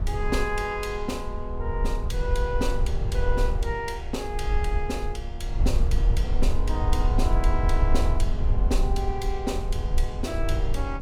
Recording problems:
rumble; below 60 Hz, SNR -3 dB

